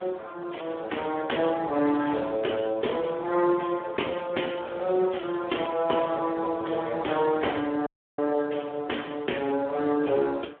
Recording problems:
phone line; 260 Hz to 3.5 kHz, Speex
wind on the microphone; below 1.6 kHz, SNR 23 dB
dropout; at 8 s

